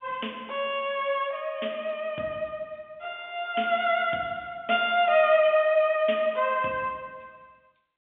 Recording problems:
telephone audio; 170 Hz to 3.5 kHz, G.711

